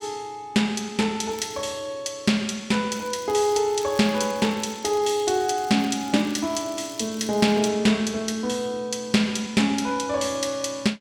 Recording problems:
crackling; at 1.5 s and from 3 to 7.5 s; loose cable, SNR 22 dB

